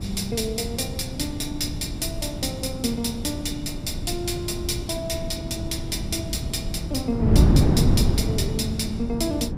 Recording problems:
wind on the microphone; below 210 Hz, SNR -1 dB

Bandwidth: 15.5 kHz